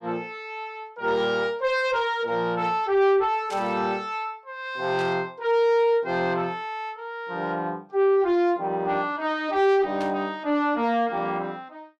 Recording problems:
distortion; soft clipping, signal-to-distortion ratio 11 dB
burst of static; at 3.5 s, at 5 s and at 10 s; peak -10 dB vs average level

